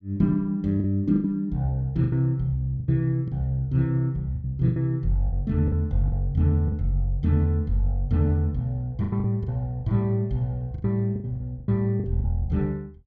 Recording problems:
lost packets; 10% of the sound replaced, filled with the last packet

